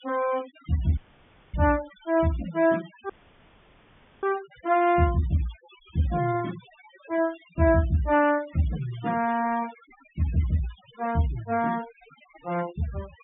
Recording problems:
low-pass filter; nothing above 3.6 kHz
noise reduction artefacts; signal-to-artefact ratio 19 dB
audio cutting out; at 1 s for 0.5 s and at 3 s for 1 s

